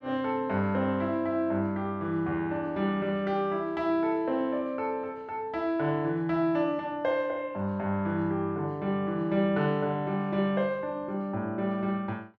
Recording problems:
none

